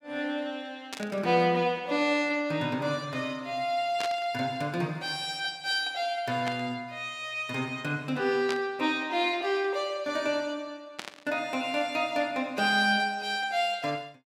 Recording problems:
burst of static; 5 times, first at 1 s; peak -2 dB vs average level

